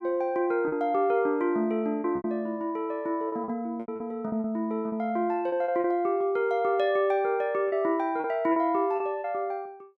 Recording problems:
packet loss; 8% of the sound replaced, filled with repeated pitch periods

